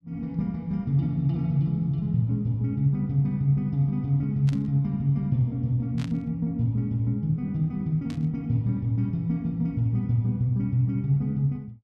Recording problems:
static burst; at 4.5 s, at 6 s and at 8 s; peak -13 dB vs average level

